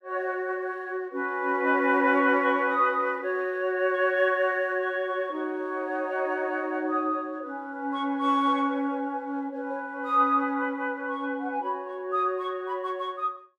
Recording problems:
none

